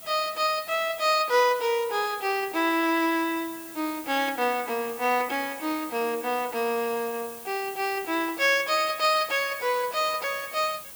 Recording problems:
background hiss; SNR 14 dB

